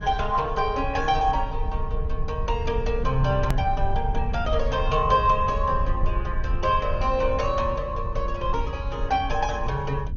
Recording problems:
codec artefacts; Opus, then MP2, log-spectral distance 2 dB
rumble; below 68 Hz, SNR 5 dB
click at an edit; at 3.5 s

